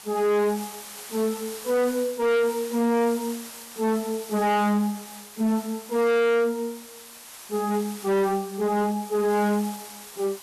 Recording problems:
distortion; hard clipping, signal-to-distortion ratio 7 dB
background hiss; SNR 15 dB

